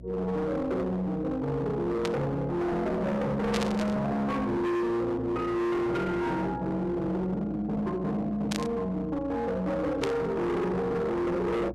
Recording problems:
distorted audio; hard clipping, signal-to-distortion ratio 7 dB
electrical hum; 60 Hz, harmonics up to 660 Hz, SNR 17 dB
static burst; 4 times, first at 2 s; peak 0 dB vs average level

